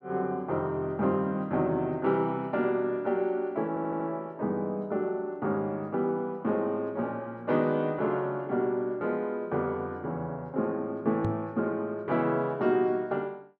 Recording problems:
audio stuttering; at 3.5 s
microphone bump; at 11 s; peak +1 dB vs average level

